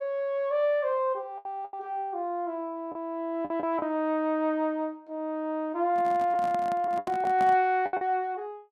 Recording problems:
lost packets; 6% of the sound replaced, filled with the last packet
handling noise; from 6 to 7.5 s; peak -5 dB vs average level

